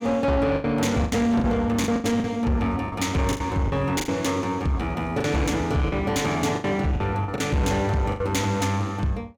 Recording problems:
distorted audio; soft clipping, signal-to-distortion ratio 10 dB
packet loss; 10% of the sound replaced, filled with the last packet

